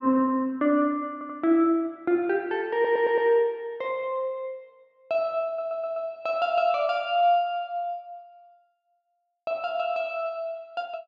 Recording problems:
audio stuttering; at 1 s, at 2.5 s and at 5.5 s

